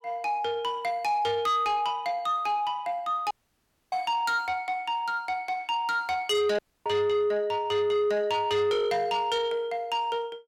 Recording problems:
distorted audio; soft clipping, signal-to-distortion ratio 10 dB
dropout; at 3.5 s for 0.5 s and at 6.5 s

